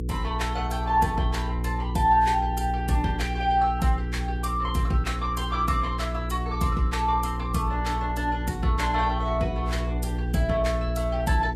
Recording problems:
codec artefacts; Vorbis, log-spectral distance 2 dB, nothing above 13.8 kHz
hum; 60 Hz, harmonics up to 480 Hz, SNR 4 dB

